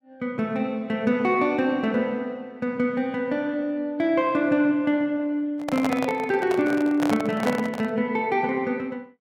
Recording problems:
microphone handling noise; from 5.5 to 8 s; peak +1 dB vs average level

